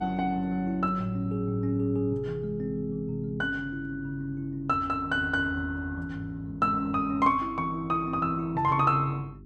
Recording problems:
hum; 50 Hz, harmonics up to 400 Hz, SNR 19 dB

